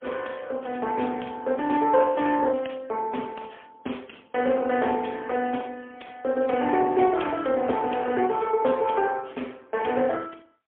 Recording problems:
phone line; 240 Hz to 3.3 kHz, AMR-NB, then MP3

